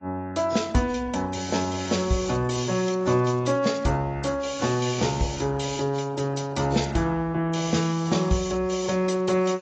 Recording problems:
codec artefacts; AAC, log-spectral distance 6 dB

